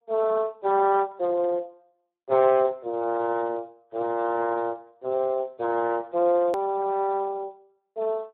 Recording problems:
telephone audio; 280 Hz to 2.1 kHz, Speex
click at an edit; at 6.5 s

